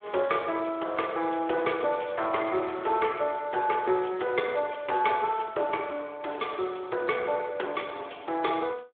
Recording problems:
telephone audio; 320 Hz to 3.5 kHz, Speex

